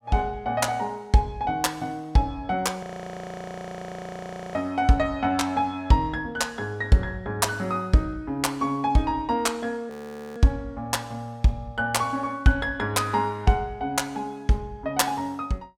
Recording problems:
frozen audio; at 3 s for 1.5 s and at 10 s

